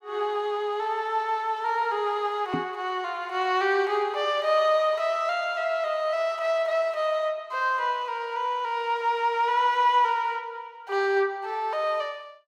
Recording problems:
knock on the microphone; at 2.5 s; peak 0 dB vs average level

